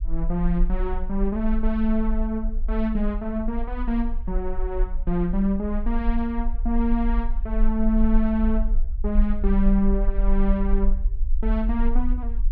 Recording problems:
low-frequency rumble; below 40 Hz, strongest tone 24 Hz, SNR 2 dB

